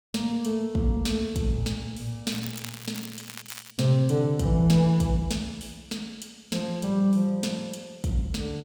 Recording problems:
crackle; from 2.5 to 3.5 s; loose cable, SNR 14 dB

